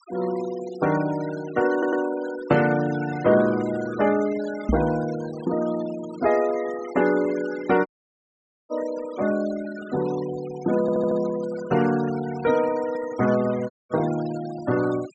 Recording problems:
low-pass filter; nothing above 8 kHz
noise reduction artefacts; signal-to-artefact ratio 17 dB
audio stuttering; at 1.5 s and at 11 s
microphone thump; at 4.5 s; peak +4 dB vs average level
dropout; at 8 s for 1 s and at 14 s

